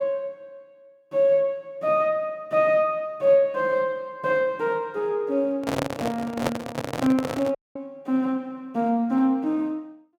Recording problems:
microphone handling noise; from 5.5 to 7.5 s; peak +4 dB vs average level
dropout; at 7.5 s

